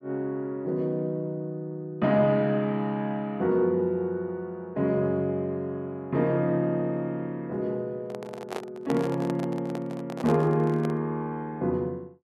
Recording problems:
microphone handling noise; from 8 to 11 s; peak -2 dB vs average level

